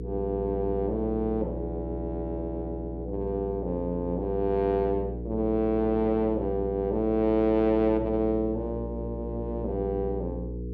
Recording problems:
electrical hum; 60 Hz, harmonics up to 480 Hz, SNR 8 dB

